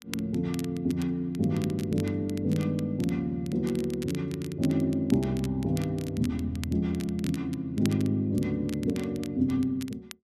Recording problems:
crackle; vinyl, SNR 18 dB

